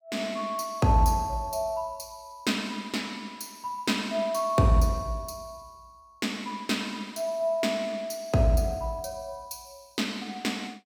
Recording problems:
none

